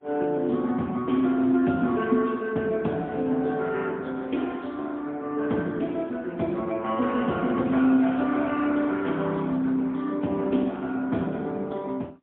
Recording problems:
telephone audio; 130 Hz to 3.4 kHz, AMR-NB, then MP3

